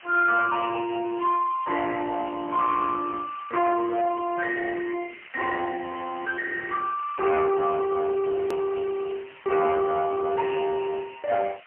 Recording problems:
phone line; 340 Hz to 2.8 kHz, AMR-NB, then MP3
distortion; soft clipping, signal-to-distortion ratio 11 dB
background hiss; SNR 21 dB
edit click; at 8.5 s

